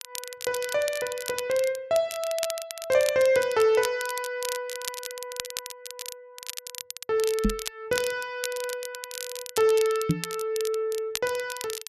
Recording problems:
crackle; vinyl, SNR 9 dB
microphone bump; at 7.5 s and at 10 s; peak +7 dB vs average level

